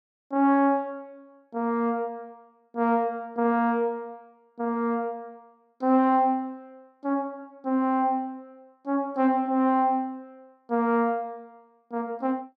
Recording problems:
none

